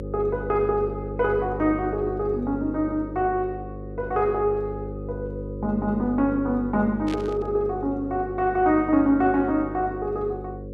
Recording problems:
electrical hum; 50 Hz, harmonics up to 550 Hz, SNR 10 dB
burst of static; at 7 s; peak -10 dB vs average level

